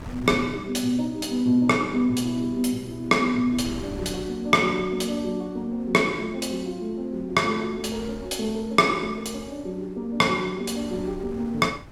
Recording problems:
wind noise; below 330 Hz, SNR 19 dB

